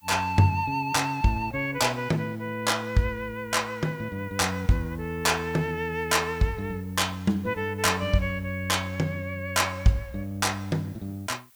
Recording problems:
background hiss; SNR 28 dB

